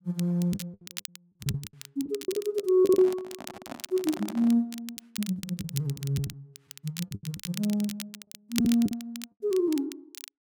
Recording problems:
crackle; vinyl, SNR 13 dB
lost packets; 11% of the sound replaced, filled with the last packet
handling noise; from 3 to 4.5 s; peak -6 dB vs average level

